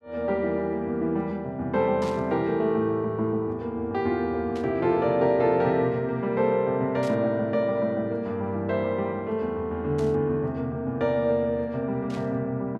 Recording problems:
static burst; 5 times, first at 2 s; peak -12 dB vs average level

